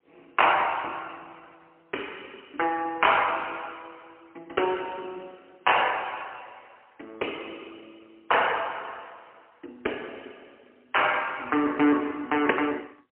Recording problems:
telephone audio; 260 Hz to 3.1 kHz, AMR-NB, then MP3

